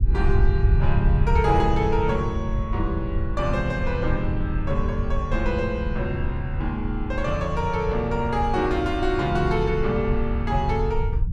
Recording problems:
low-frequency rumble; below 86 Hz, SNR 2 dB

